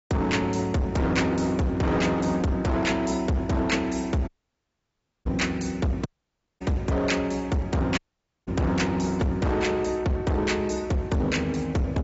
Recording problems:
treble cut off; nothing above 7.6 kHz
lossy compression; AAC, log-spectral distance 3 dB
distorted audio; hard clipping, signal-to-distortion ratio 7 dB
audio cutting out; at 4.5 s for 1 s, at 6 s for 0.5 s and at 8 s

